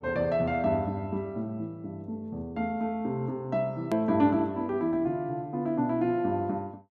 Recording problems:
click at an edit; at 4 s

